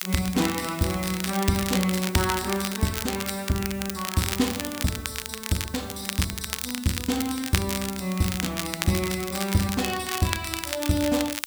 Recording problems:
background hiss; slope +6 dB per octave, SNR 17 dB
crackling; vinyl, SNR 4 dB

